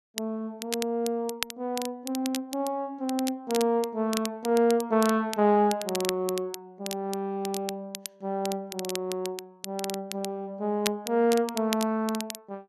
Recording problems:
crackling; vinyl, SNR 10 dB

